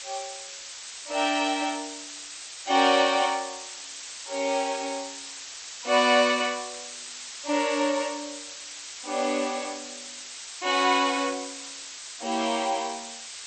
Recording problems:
lossy compression; MP2, log-spectral distance 23 dB, nothing above 8.5 kHz
hiss; slope +4 dB per octave, SNR 11 dB

